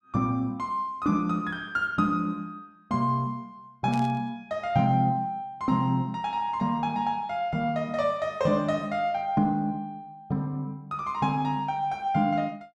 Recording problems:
static burst; at 4 s; peak -11 dB vs average level

